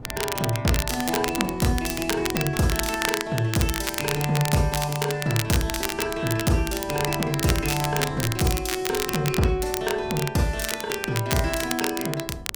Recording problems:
wind noise; below 240 Hz, SNR 18 dB
crackle; vinyl, SNR 5 dB

